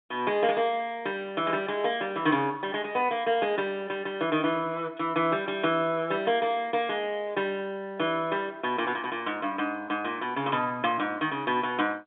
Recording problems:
phone line; 220 Hz to 3.6 kHz, G.711

